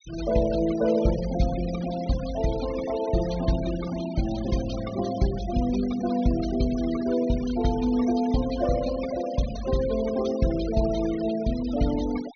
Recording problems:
treble missing; nothing above 6.3 kHz
noise reduction artefacts; signal-to-artefact ratio 15 dB

